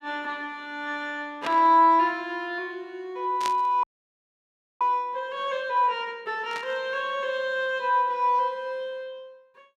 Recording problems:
static burst; at 1.5 s, at 3.5 s and at 6.5 s; peak -3 dB vs average level
audio freezing; at 4 s for 1 s

